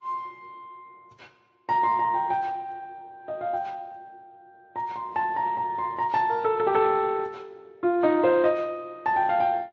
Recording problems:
codec artefacts; Speex, then AAC, log-spectral distance 2 dB

